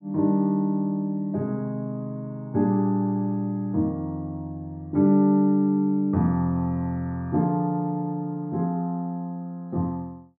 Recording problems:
none

